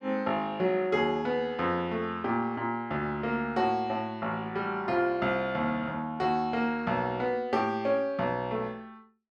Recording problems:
none

